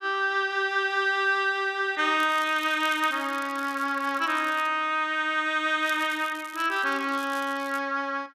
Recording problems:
crackle; from 2 to 4.5 s and from 6 to 8 s; loose cable, SNR 21 dB

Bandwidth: 14 kHz